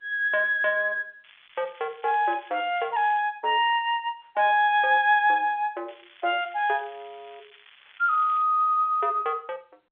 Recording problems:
phone line; 340 Hz to 3.7 kHz, G.711
crackle; from 1 to 3 s and from 6 to 8.5 s; loose cable, SNR 27 dB

